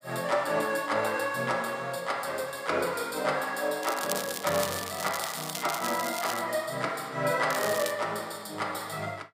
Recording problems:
crackling; from 4 to 6.5 s and at 7.5 s; loose cable, SNR 6 dB

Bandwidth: 15.5 kHz